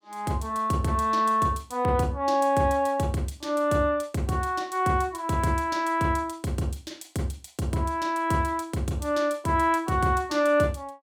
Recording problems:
none

